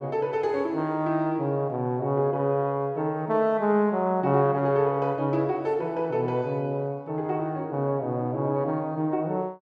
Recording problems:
none

